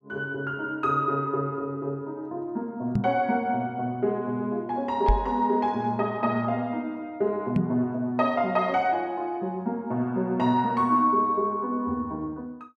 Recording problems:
knock on the microphone; at 3 s, at 5 s and at 7.5 s; peak +6 dB vs average level

